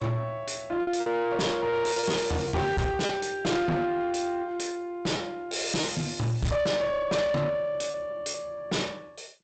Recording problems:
lossy compression; G.722, log-spectral distance 4 dB, nothing above 7.8 kHz
distorted audio; soft clipping, signal-to-distortion ratio 8 dB
packet loss; 6% of the sound replaced, filled with repeated pitch periods

